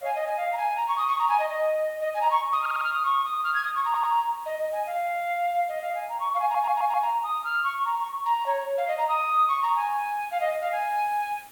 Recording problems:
background hiss; slope -2 dB per octave, SNR 25 dB
stutter; at 2.5 s, at 4 s and at 6.5 s

